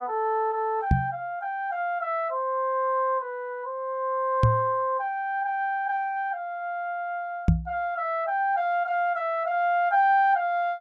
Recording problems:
microphone thump; at 1 s, at 4.5 s and at 7.5 s; peak +9 dB vs average level

